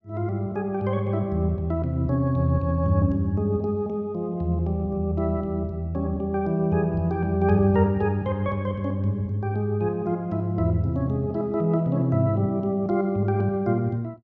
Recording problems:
none

